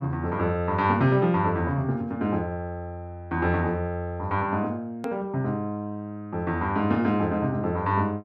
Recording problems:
click at an edit; at 5 s

